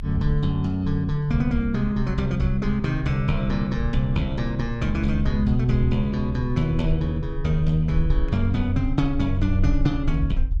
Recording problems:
rumble; below 56 Hz, SNR 8 dB

